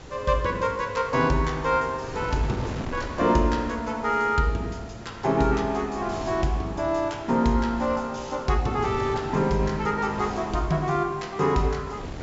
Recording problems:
treble missing; nothing above 8 kHz
hiss; slope -2 dB per octave, SNR 27 dB
wind on the microphone; below 630 Hz, SNR 14 dB

